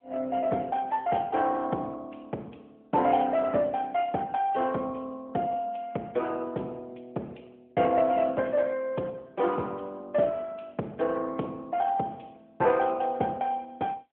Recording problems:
telephone audio; 260 Hz to 3.2 kHz, AMR-NB

